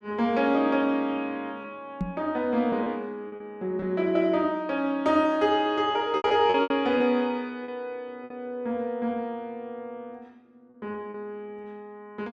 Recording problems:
packet loss; 5% of the sound replaced, filled with repeated pitch periods
knock on the microphone; at 2 s; peak +1 dB vs average level

